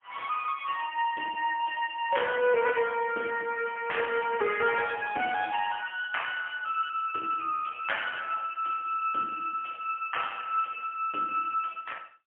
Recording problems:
telephone audio; 240 Hz to 3.3 kHz, AMR-NB, then MP3

